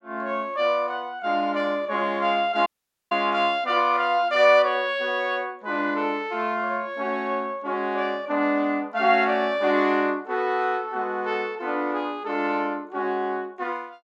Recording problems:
dropout; at 2.5 s

